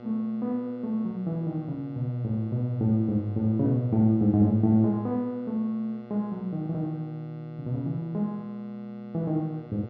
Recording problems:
hum; 60 Hz, harmonics up to 2.2 kHz, SNR 18 dB

